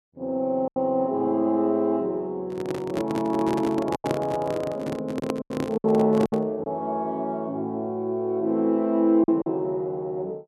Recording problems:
packet loss; 5% of the sound replaced, filled with silence
handling noise; from 2.5 to 6.5 s; peak +1 dB vs average level

